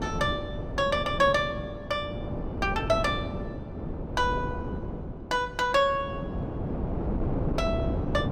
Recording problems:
wind on the microphone; below 360 Hz, SNR 5 dB

